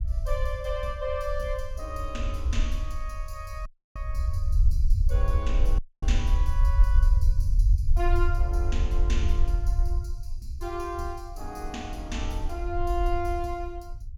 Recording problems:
low-frequency rumble; below 62 Hz, SNR -7 dB
dropout; at 3.5 s and at 6 s

